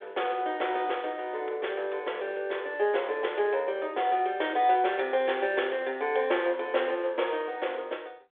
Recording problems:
phone line; 320 Hz to 3.6 kHz, G.726

